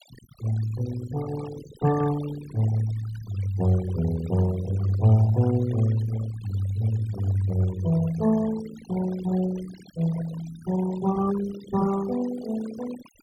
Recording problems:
noise reduction artefacts; signal-to-artefact ratio 15 dB

